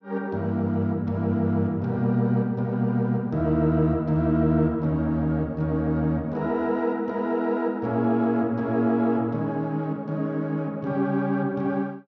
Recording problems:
none

